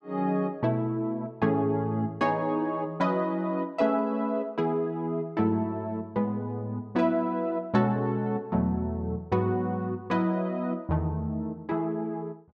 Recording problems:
none

